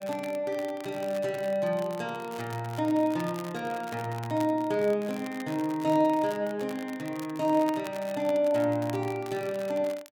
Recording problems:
crackle; vinyl, SNR 19 dB

